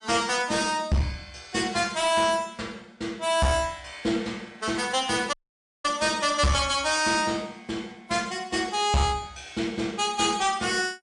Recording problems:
lossy codec; MP3, log-spectral distance 4 dB, nothing above 10.1 kHz
distortion; hard clipping, uneven, signal-to-distortion ratio 9 dB
dropout; at 5.5 s for 0.5 s

